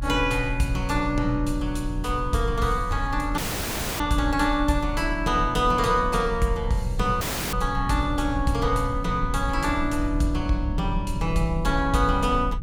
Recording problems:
low-frequency rumble; below 74 Hz, strongest tone 36 Hz, SNR 7 dB
audio cutting out; at 3.5 s for 0.5 s and at 7 s

